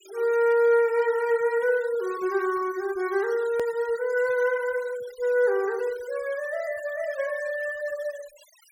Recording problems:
noise reduction artefacts; signal-to-artefact ratio 21 dB
click at an edit; at 3.5 s

